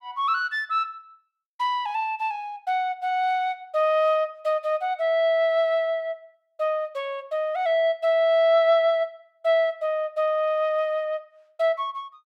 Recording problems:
none

